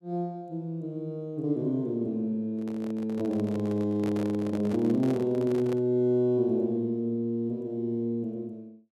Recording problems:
handling noise; from 2.5 to 6 s; peak -6 dB vs average level

